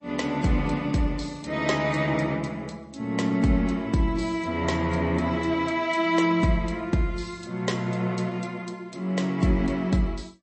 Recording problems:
lossy codec; MP3, log-spectral distance 3 dB, nothing above 8.2 kHz

